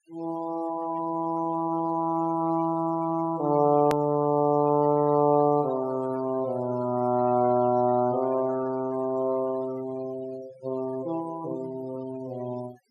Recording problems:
denoising artefacts; signal-to-artefact ratio 22 dB
edit click; at 4 s

